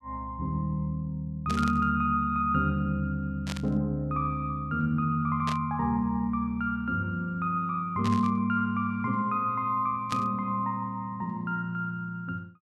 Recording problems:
static burst; 5 times, first at 1.5 s; peak -3 dB vs average level

